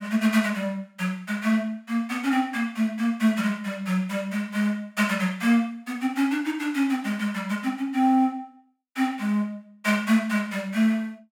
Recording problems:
none

